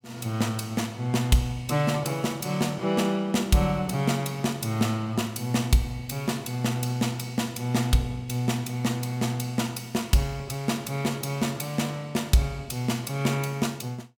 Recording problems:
none

